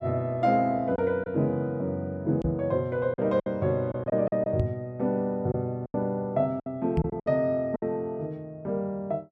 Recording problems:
packet loss; 6% of the sound replaced, filled with silence
microphone bump; at 2.5 s, at 4.5 s and at 7 s; peak +6 dB vs average level

